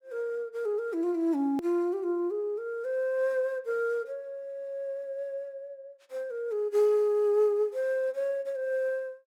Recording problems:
click at an edit; at 1.5 s

